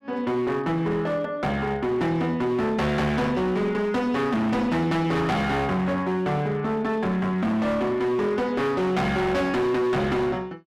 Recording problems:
distorted audio; hard clipping, signal-to-distortion ratio 8 dB

